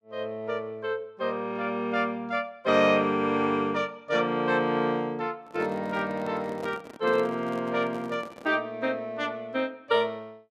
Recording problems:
microphone handling noise; from 5.5 to 8.5 s; peak -7 dB vs average level

